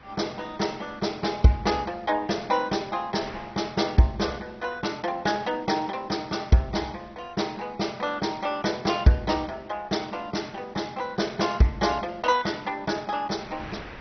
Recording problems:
lossy compression; MP2, log-spectral distance 4 dB, nothing above 6 kHz
wind noise; below 2 kHz, SNR 23 dB

